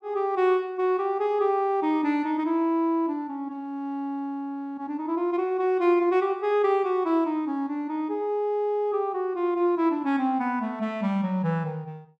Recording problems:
none

